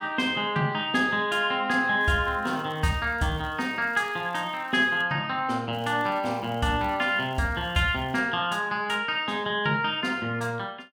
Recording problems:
crackle; from 2 to 5 s and from 5.5 to 8 s; loose cable, SNR 29 dB

